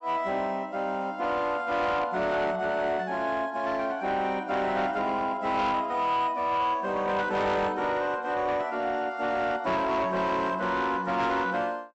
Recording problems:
treble missing; nothing above 7.9 kHz
distorted audio; soft clipping, signal-to-distortion ratio 11 dB

